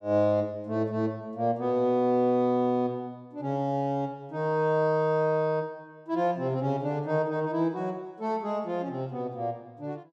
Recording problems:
none

